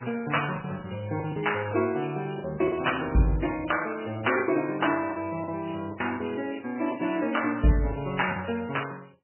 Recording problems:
codec artefacts; MP3, log-spectral distance 9 dB, nothing above 3 kHz
lost packets; 9% of the sound replaced, filled with the last packet

